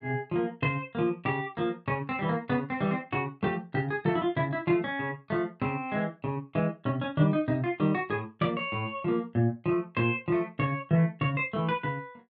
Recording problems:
none

